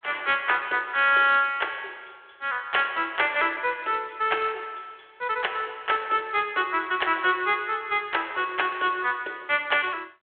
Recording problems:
telephone audio; 300 Hz to 3.5 kHz, G.726

